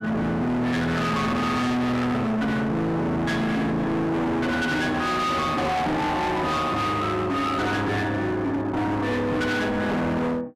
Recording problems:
distorted audio; hard clipping, signal-to-distortion ratio 6 dB

